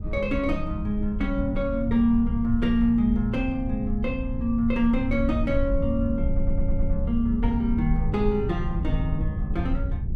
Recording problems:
low-frequency rumble; below 78 Hz, SNR 5 dB
audio stuttering; at 6.5 s

